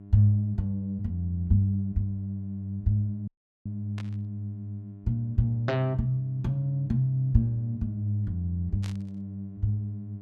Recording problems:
hum; 50 Hz, harmonics up to 700 Hz, SNR 17 dB
dropout; at 3.5 s
static burst; at 4 s and at 9 s; peak -10 dB vs average level

